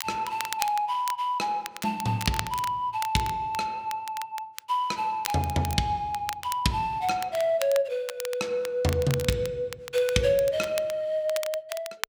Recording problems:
crackle; vinyl, SNR 12 dB

